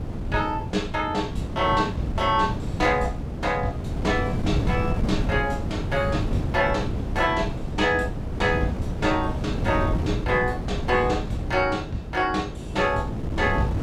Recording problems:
electrical hum; 60 Hz, harmonics up to 720 Hz, SNR 21 dB
wind on the microphone; below 240 Hz, SNR 4 dB

